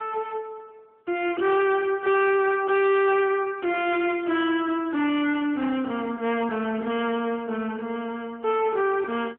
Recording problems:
telephone audio; 260 Hz to 3.3 kHz, AMR-NB
distortion; hard clipping, signal-to-distortion ratio 12 dB

